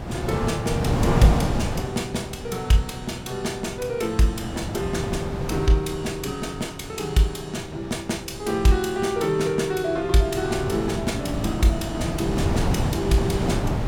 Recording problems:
wind on the microphone; below 410 Hz, SNR 3 dB

